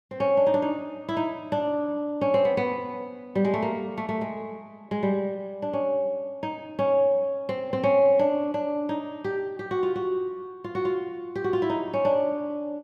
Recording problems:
none

